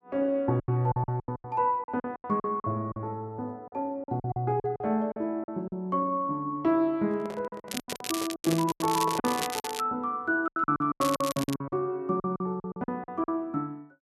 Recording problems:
lost packets; 15% of the sound replaced, filled with silence
handling noise; from 7 to 9.5 s; peak -3 dB vs average level
crackling; from 7.5 to 10 s and at 11 s; loose cable, SNR 7 dB

